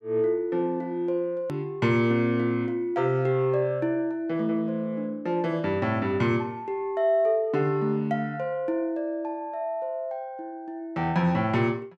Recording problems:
edit click; at 1.5 s

